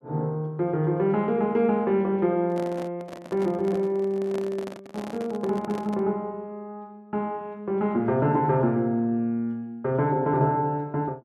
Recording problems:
handling noise; from 2.5 to 6 s; peak -8 dB vs average level

